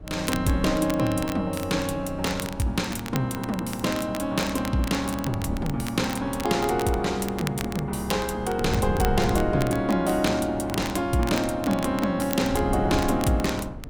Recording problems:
wind noise; below 210 Hz, SNR 10 dB
crackle; vinyl, SNR 14 dB

